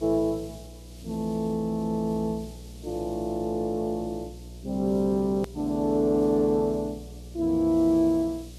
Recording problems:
electrical hum; 60 Hz, harmonics up to 720 Hz, SNR 18 dB
background hiss; SNR 25 dB
edit click; at 5.5 s

